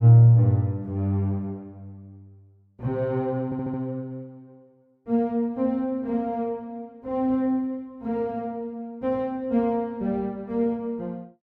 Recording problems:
audio stuttering; at 3.5 s

